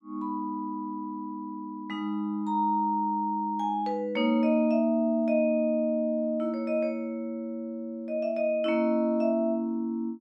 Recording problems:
none

